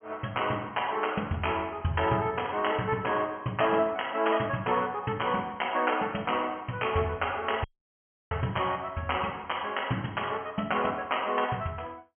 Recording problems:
treble missing; nothing above 3.2 kHz
audio cutting out; at 7.5 s for 0.5 s

